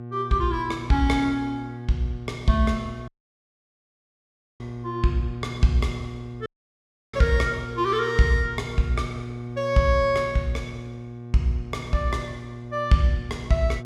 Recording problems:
electrical hum; 60 Hz, harmonics up to 840 Hz, SNR 12 dB
audio cutting out; at 3 s for 1.5 s and at 6.5 s for 0.5 s

